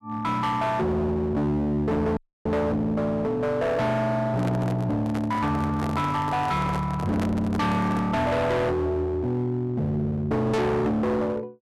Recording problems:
distorted audio; hard clipping, uneven, signal-to-distortion ratio 6 dB
dropout; at 2 s
handling noise; from 4.5 to 8 s; peak -2 dB vs average level

